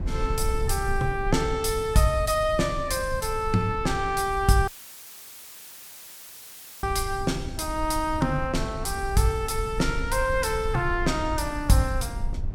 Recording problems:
low-frequency rumble; below 76 Hz, SNR 9 dB
dropout; at 4.5 s for 2 s; filled with static

